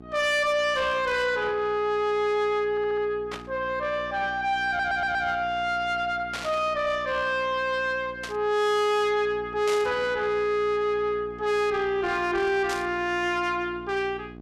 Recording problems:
distortion; soft clipping, signal-to-distortion ratio 11 dB
mains hum; 60 Hz, harmonics up to 1.1 kHz, SNR 19 dB
stutter; at 2.5 s and at 4.5 s
burst of static; 5 times, first at 3.5 s; peak -5 dB vs average level

